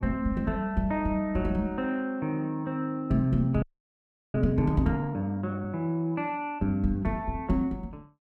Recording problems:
audio freezing; at 3.5 s for 0.5 s

